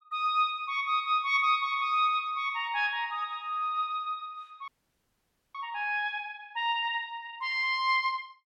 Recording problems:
audio freezing; at 4.5 s for 1 s

